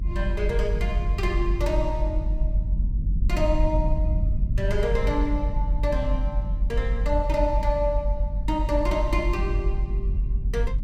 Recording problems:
rumble; below 54 Hz, strongest tone 42 Hz, SNR -2 dB

